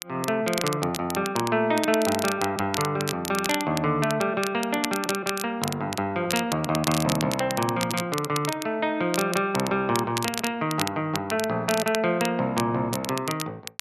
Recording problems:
crackle; vinyl, SNR 7 dB

